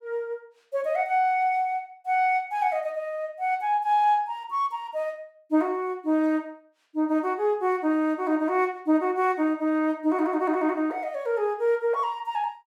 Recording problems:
none

